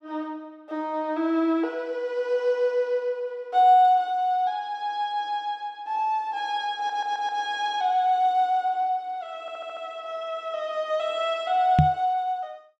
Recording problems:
stutter; at 7 s and at 9.5 s
microphone thump; at 12 s; peak +9 dB vs average level

